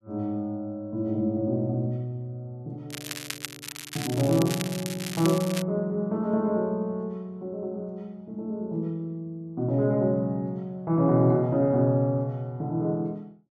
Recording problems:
crackling; from 3 to 5.5 s; loose cable, SNR 9 dB

